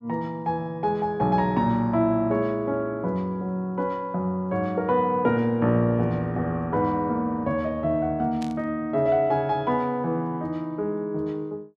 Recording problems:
static burst; at 8.5 s; peak -12 dB vs average level

